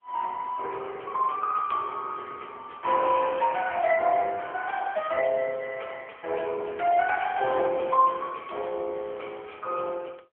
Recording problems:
phone line; 340 Hz to 3.4 kHz, AMR-NB

